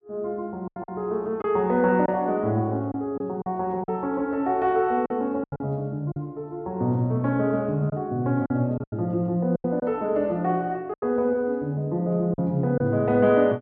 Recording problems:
packet loss; 6% of the sound replaced, filled with silence

